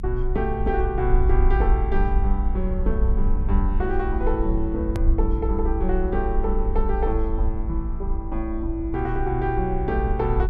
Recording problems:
rumble; below 54 Hz, strongest tone 26 Hz, SNR -1 dB
edit click; at 5 s

